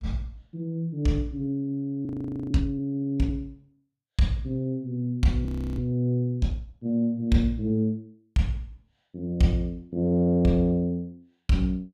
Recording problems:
frozen audio; at 2 s and at 5.5 s

